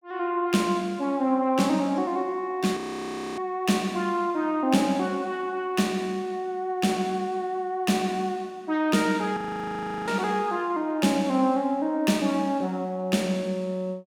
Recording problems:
audio freezing; at 3 s for 0.5 s and at 9.5 s for 0.5 s

